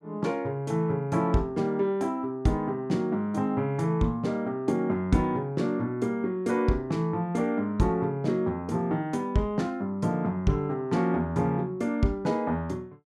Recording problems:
none

